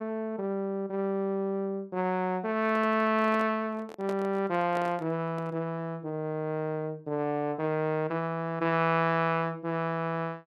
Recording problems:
microphone handling noise; from 2.5 to 5.5 s; peak -6 dB vs average level

